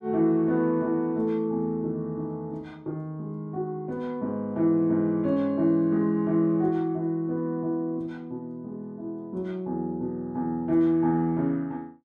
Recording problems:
none

